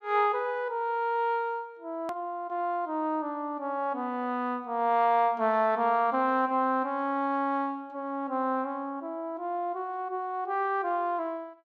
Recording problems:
hard cut with a click; at 2 s

